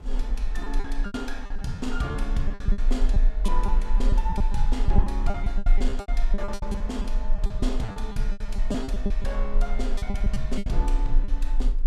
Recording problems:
rumble; below 38 Hz, strongest tone 26 Hz, SNR -5 dB
wind on the microphone; below 330 Hz, SNR 16 dB
lost packets; 16% of the sound replaced, filled with repeated pitch periods

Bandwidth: 15.5 kHz